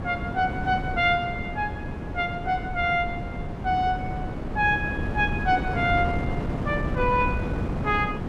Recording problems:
wind noise; below 350 Hz, SNR 5 dB

